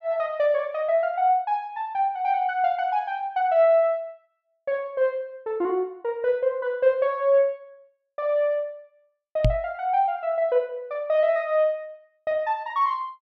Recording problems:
microphone thump; at 9.5 s; peak +6 dB vs average level

